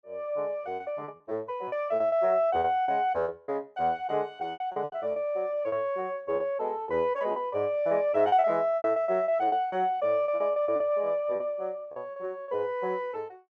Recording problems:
packet loss; 12% of the sound replaced, filled with repeated pitch periods

